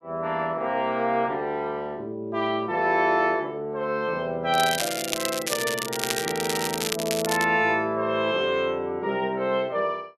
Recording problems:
crackling; from 4.5 to 7.5 s; loose cable, SNR 4 dB

